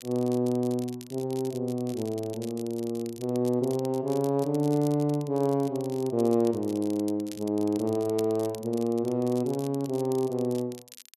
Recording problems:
crackling; vinyl, SNR 19 dB

